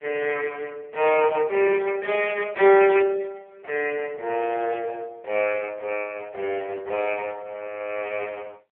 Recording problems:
phone line; 320 Hz to 3.3 kHz, AMR-NB

